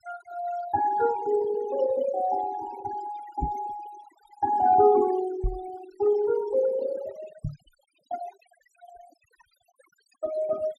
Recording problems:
noise reduction artefacts; signal-to-artefact ratio 15 dB
microphone bump; at 3.5 s, at 5.5 s and at 7.5 s; peak +1 dB vs average level

